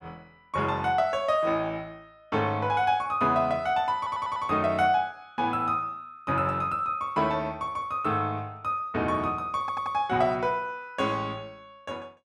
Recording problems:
audio stuttering; at 4 s and at 9.5 s

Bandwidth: 13.5 kHz